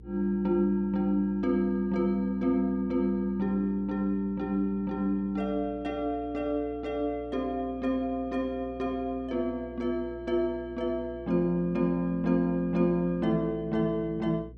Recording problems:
hum; 60 Hz, harmonics up to 480 Hz, SNR 19 dB

